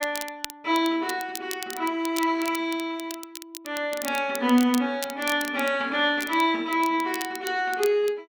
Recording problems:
crackle; vinyl, SNR 13 dB

